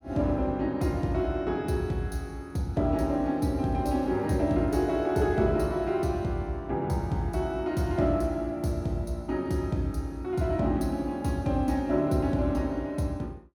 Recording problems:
none

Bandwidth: 17.5 kHz